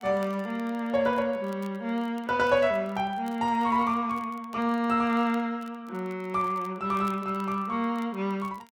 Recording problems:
crackling; vinyl, SNR 28 dB

